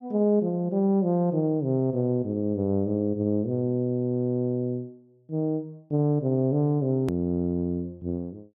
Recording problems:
hard cut with a click; at 7 s

